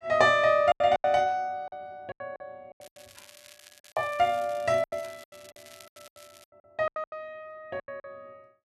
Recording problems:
packet loss; 15% of the sound replaced, filled with silence
crackling; from 3 to 6.5 s; loose cable, SNR 25 dB

